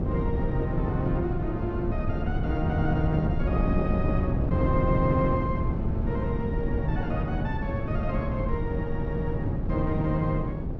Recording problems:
wind on the microphone; below 210 Hz, SNR -2 dB

